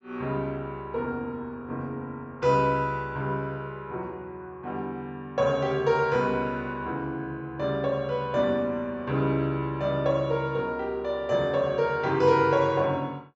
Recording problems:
low-pass filter; nothing above 8 kHz

